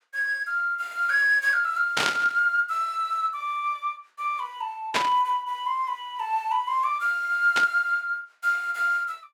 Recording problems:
burst of static; at 2 s, at 5 s and at 7.5 s; peak +5 dB vs average level

